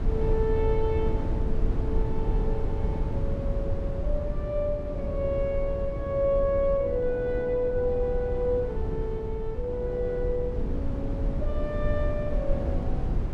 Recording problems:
low-frequency rumble; below 98 Hz, SNR 2 dB

